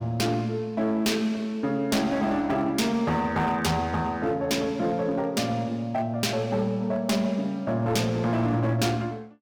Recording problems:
distorted audio; hard clipping, signal-to-distortion ratio 11 dB

